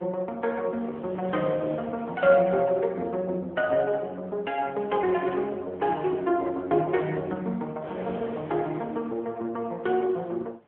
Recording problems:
telephone audio; 240 Hz to 3.3 kHz, AMR-NB
wind on the microphone; below 890 Hz, SNR 16 dB

